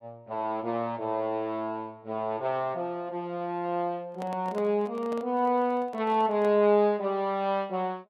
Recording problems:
handling noise; from 4 to 6.5 s; peak -8 dB vs average level

